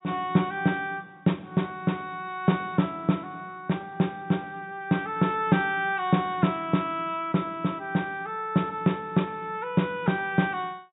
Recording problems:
treble cut off; nothing above 4 kHz

